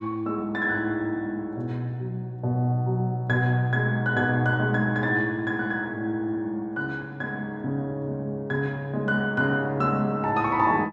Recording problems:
none

